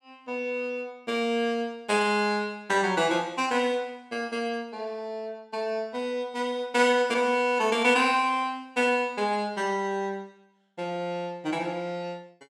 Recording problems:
none

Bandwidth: 17 kHz